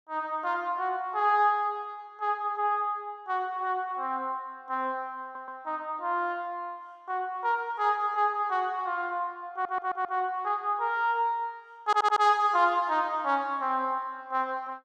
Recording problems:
audio stuttering; at 5 s, at 9.5 s and at 12 s

